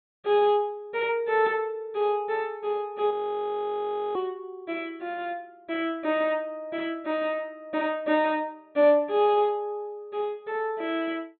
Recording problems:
treble cut off; nothing above 4 kHz
frozen audio; at 3 s for 1 s

